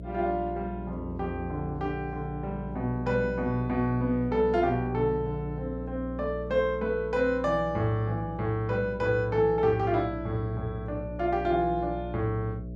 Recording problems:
electrical hum; 60 Hz, harmonics up to 660 Hz, SNR 10 dB

